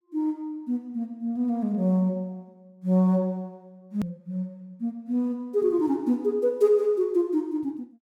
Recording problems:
hard cut with a click; at 4 s

